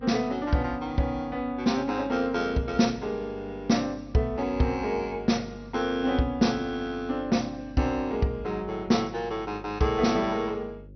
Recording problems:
codec artefacts; MP2, log-spectral distance 2 dB, nothing above 6 kHz
hum; 50 Hz, harmonics up to 550 Hz, SNR 20 dB

